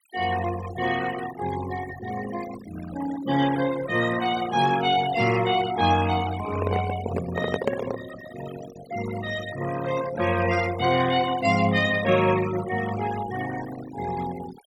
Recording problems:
noise reduction artefacts; signal-to-artefact ratio 11 dB
microphone handling noise; from 6.5 to 8 s; peak +4 dB vs average level

